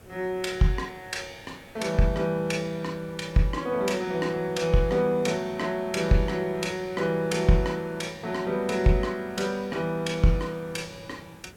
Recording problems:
background hiss; SNR 23 dB

